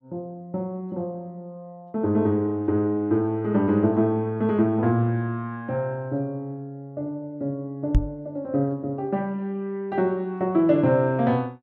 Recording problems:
microphone thump; at 8 s; peak +7 dB vs average level

